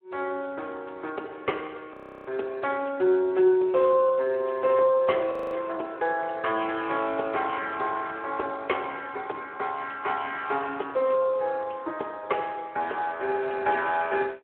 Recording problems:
phone line; 300 Hz to 3.3 kHz, Speex
frozen audio; at 2 s and at 5.5 s

